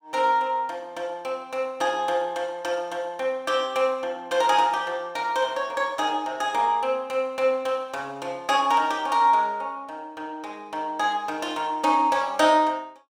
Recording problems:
none

